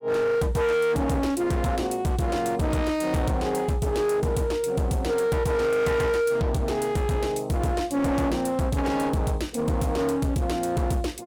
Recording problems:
distorted audio; hard clipping, signal-to-distortion ratio 8 dB

